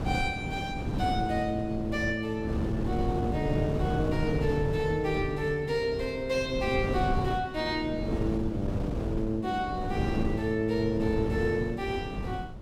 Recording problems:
wind noise; below 270 Hz, SNR 4 dB

